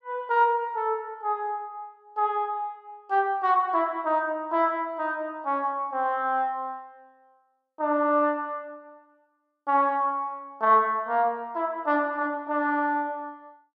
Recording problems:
none

